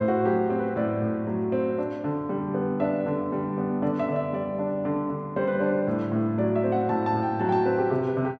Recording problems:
none

